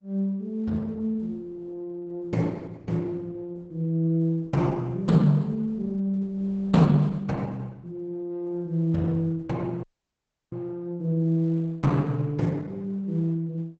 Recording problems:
codec artefacts; Opus, log-spectral distance 2 dB, nothing above 8 kHz
dropout; at 10 s for 0.5 s

